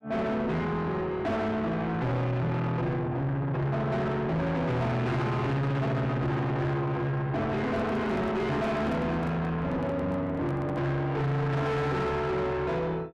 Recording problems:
distorted audio; soft clipping, signal-to-distortion ratio 5 dB
microphone handling noise; from 7.5 to 11 s; peak -3 dB vs average level

